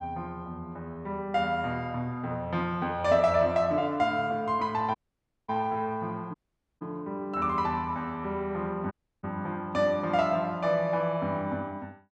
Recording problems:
dropout; at 5 s for 0.5 s, at 6.5 s and at 9 s

